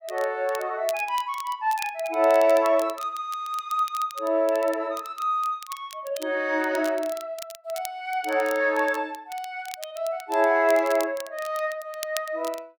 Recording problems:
crackling; vinyl, SNR 17 dB

